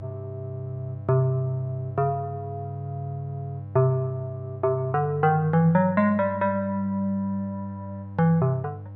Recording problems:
electrical hum; 50 Hz, harmonics up to 800 Hz, SNR 13 dB

